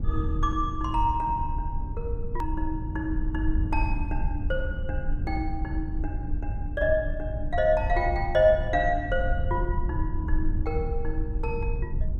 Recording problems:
low-frequency rumble; below 76 Hz, SNR 2 dB
hard cut with a click; at 2.5 s

